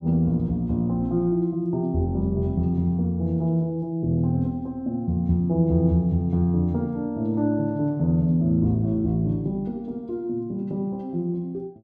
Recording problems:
none

